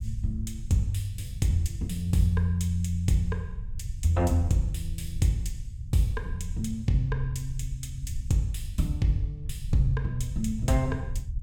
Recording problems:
rumble; below 88 Hz, SNR 9 dB

